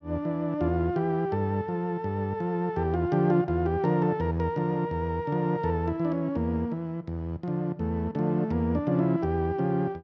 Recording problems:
none

